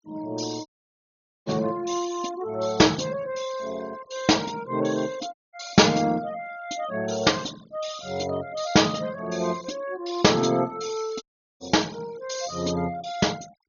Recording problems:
low-pass filter; nothing above 6.8 kHz
noise reduction artefacts; signal-to-artefact ratio 21 dB
dropout; at 0.5 s for 1 s, at 5.5 s and at 11 s

